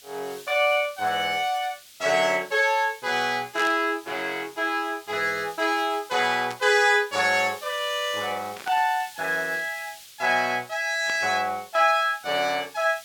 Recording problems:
background hiss; SNR 20 dB
static burst; 4 times, first at 3.5 s; peak -8 dB vs average level

